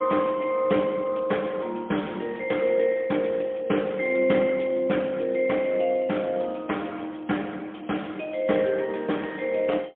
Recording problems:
phone line; 130 Hz to 3.4 kHz, AMR-NB, then MP3

